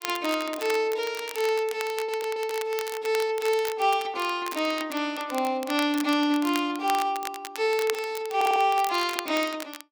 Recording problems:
crackle; vinyl, SNR 12 dB
stutter; at 2 s and at 8.5 s

